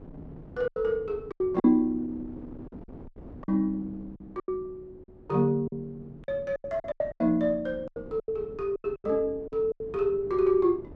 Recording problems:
wind on the microphone; below 350 Hz, SNR 19 dB
lost packets; 12% of the sound replaced, filled with silence

